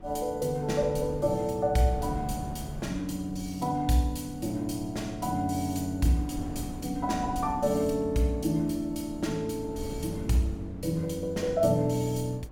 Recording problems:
wind noise; below 240 Hz, SNR 14 dB

